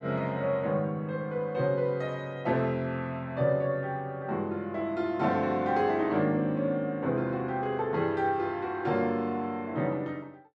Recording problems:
none

